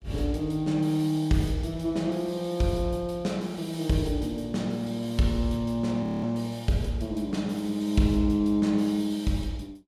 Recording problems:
audio freezing; at 6 s

